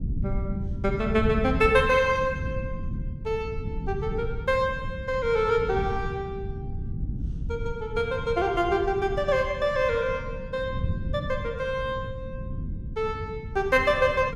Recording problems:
low-frequency rumble; below 150 Hz, SNR 8 dB

